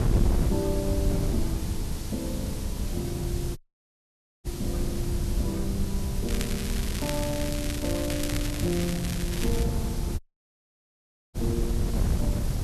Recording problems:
hiss; slope +1 dB per octave, SNR 8 dB
low-frequency rumble; below 130 Hz, SNR 7 dB
wind noise; below 130 Hz, SNR -2 dB
audio cutting out; at 3.5 s for 1 s and at 10 s for 1 s
crackle; from 6.5 to 9.5 s; loose cable, SNR 3 dB

